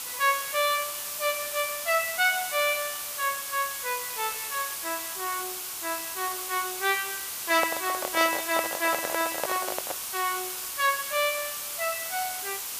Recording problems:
hiss; SNR 3 dB
handling noise; from 7.5 to 10 s; peak +3 dB vs average level

